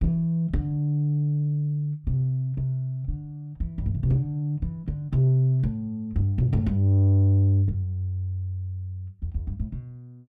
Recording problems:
distorted audio; soft clipping, signal-to-distortion ratio 11 dB

